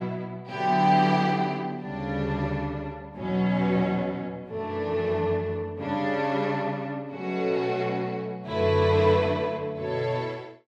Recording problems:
none

